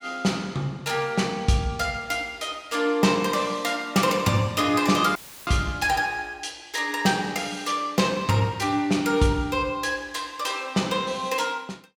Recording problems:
audio cutting out; at 5 s; filled with static

